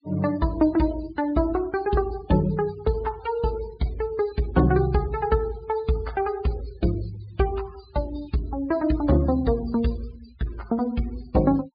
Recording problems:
low-pass filter; nothing above 4.8 kHz
noise reduction artefacts; signal-to-artefact ratio 20 dB

